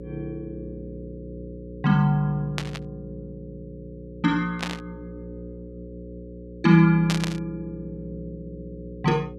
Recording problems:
electrical hum; 60 Hz, harmonics up to 540 Hz, SNR 15 dB
burst of static; at 2.5 s, at 4.5 s and at 7 s; peak -1 dB vs average level

